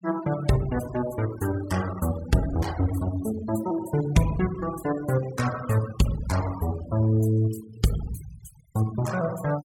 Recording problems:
denoising artefacts; signal-to-artefact ratio 14 dB

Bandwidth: 17 kHz